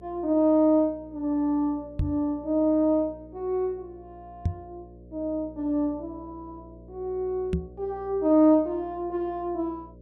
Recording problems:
hum; 60 Hz, harmonics up to 600 Hz, SNR 23 dB
microphone bump; at 2 s, at 4.5 s and at 7.5 s; peak +3 dB vs average level

